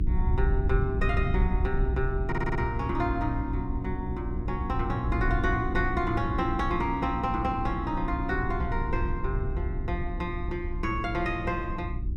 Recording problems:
hum; 60 Hz, harmonics up to 360 Hz, SNR 7 dB
wind noise; below 76 Hz, SNR 3 dB
stutter; at 2.5 s

